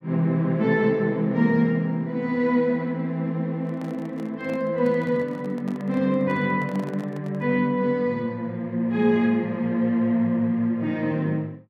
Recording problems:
microphone handling noise; from 3.5 to 7.5 s; peak -11 dB vs average level

